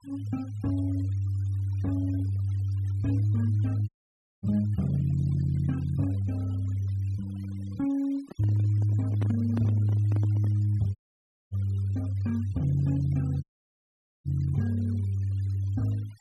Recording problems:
denoising artefacts; signal-to-artefact ratio 26 dB
audio cutting out; at 4 s for 0.5 s, at 11 s for 0.5 s and at 13 s for 1 s
microphone handling noise; from 8 to 11 s; peak -4 dB vs average level

